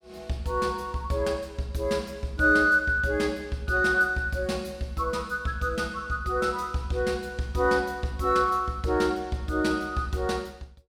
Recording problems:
none

